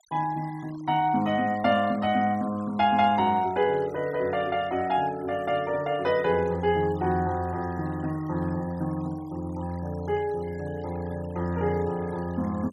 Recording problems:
denoising artefacts; signal-to-artefact ratio 23 dB

